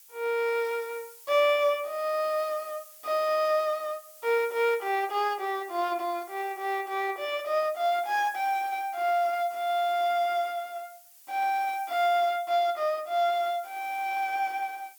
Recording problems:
hiss; slope +4 dB per octave, SNR 21 dB

